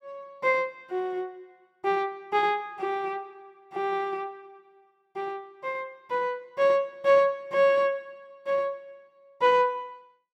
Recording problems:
none

